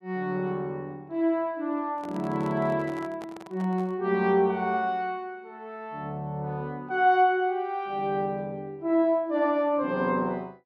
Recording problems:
handling noise; from 2 to 4 s; peak -11 dB vs average level

